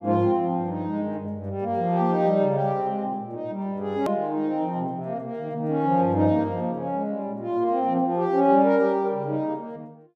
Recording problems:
hard cut with a click; at 4 s

